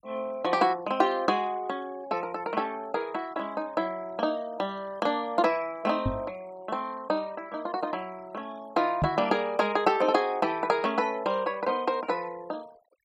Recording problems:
denoising artefacts; signal-to-artefact ratio 23 dB
knock on the microphone; at 6 s and at 9 s; peak +4 dB vs average level

